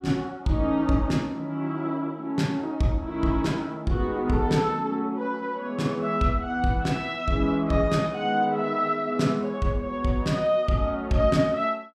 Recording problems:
none

